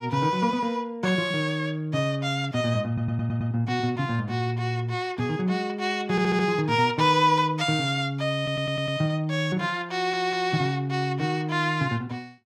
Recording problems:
audio stuttering; 4 times, first at 3 s

